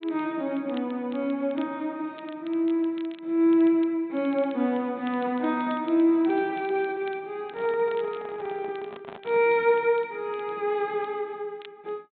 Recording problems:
treble missing; nothing above 4 kHz
crackle; vinyl, SNR 27 dB
handling noise; from 7.5 to 9.5 s; peak -11 dB vs average level

